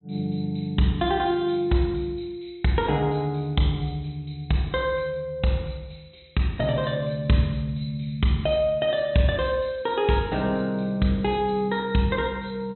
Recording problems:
low-pass filter; nothing above 4 kHz

